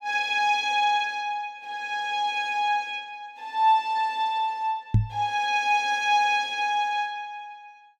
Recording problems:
microphone bump; at 5 s; peak +7 dB vs average level

